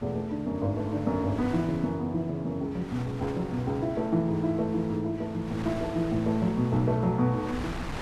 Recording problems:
wind noise; below 1.3 kHz, SNR 14 dB

